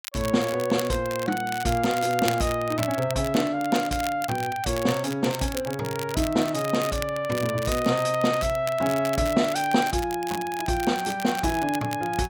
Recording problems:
crackle; vinyl, SNR 12 dB

